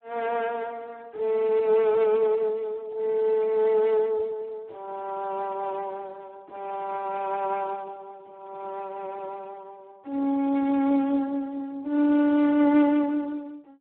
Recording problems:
telephone audio; 240 Hz to 2.9 kHz, Speex

